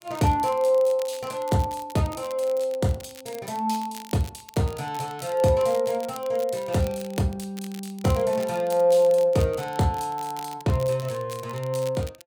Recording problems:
crackling; vinyl, SNR 20 dB

